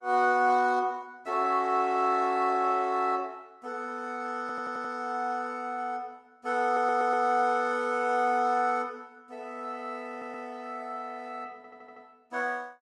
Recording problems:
codec artefacts; Opus, log-spectral distance 2 dB
audio stuttering; 4 times, first at 4.5 s

